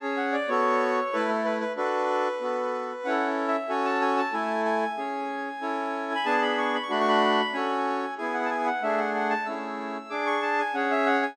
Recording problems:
none

